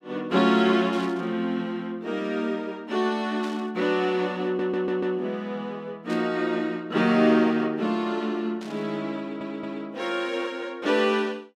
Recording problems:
burst of static; 4 times, first at 1 s; peak -12 dB vs average level
stutter; at 4.5 s and at 9 s

